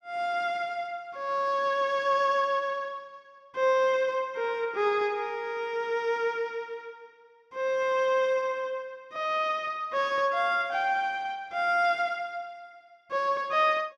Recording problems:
none

